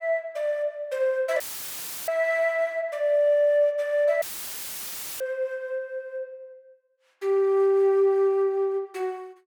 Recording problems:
dropout; at 1.5 s for 0.5 s and at 4 s for 1 s; filled with static

